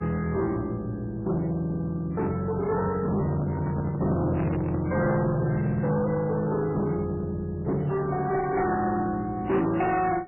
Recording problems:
codec artefacts; MP3, log-spectral distance 3 dB, nothing above 2.7 kHz
distorted audio; soft clipping, signal-to-distortion ratio 7 dB
microphone handling noise; from 2.5 to 5.5 s; peak +2 dB vs average level

